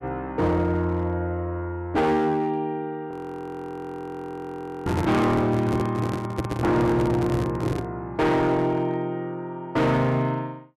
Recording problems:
distorted audio; hard clipping, signal-to-distortion ratio 8 dB
audio freezing; at 3 s for 2 s
handling noise; from 5 to 8 s; peak +2 dB vs average level

